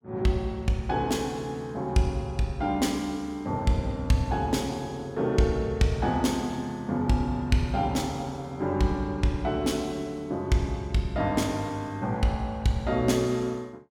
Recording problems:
none

